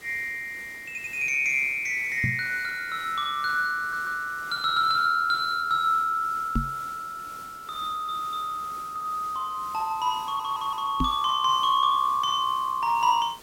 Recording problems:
hiss; slope -3 dB per octave, SNR 21 dB
stutter; 4 times, first at 1 s
microphone bump; at 2 s, at 6.5 s and at 11 s; peak +2 dB vs average level

